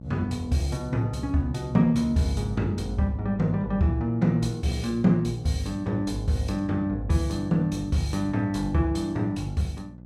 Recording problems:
hum; 60 Hz, harmonics up to 840 Hz, SNR 16 dB

